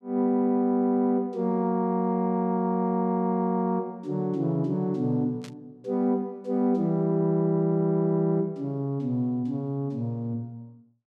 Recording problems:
burst of static; at 5.5 s; peak -14 dB vs average level

